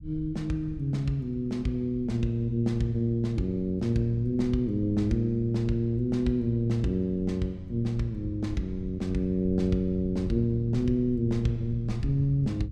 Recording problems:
low-frequency rumble; below 120 Hz, SNR 14 dB

